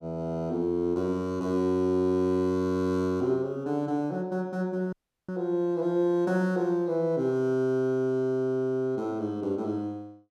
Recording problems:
audio cutting out; at 5 s

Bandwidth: 14.5 kHz